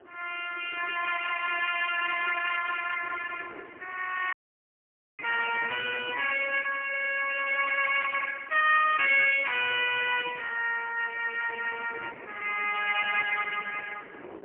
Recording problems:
phone line; 390 Hz to 3.1 kHz, AMR-NB, then MP3
wind noise; below 780 Hz, SNR 20 dB
dropout; at 4.5 s for 1 s

